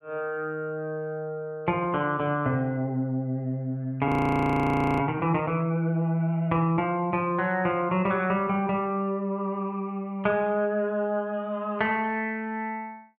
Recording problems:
frozen audio; at 4 s for 1 s

